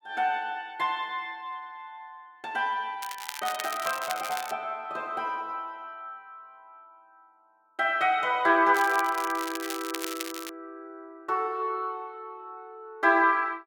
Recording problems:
crackle; from 3 to 4.5 s and from 8.5 to 11 s; loose cable, SNR 10 dB

